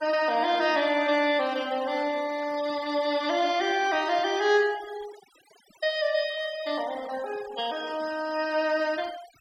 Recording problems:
denoising artefacts; signal-to-artefact ratio 17 dB

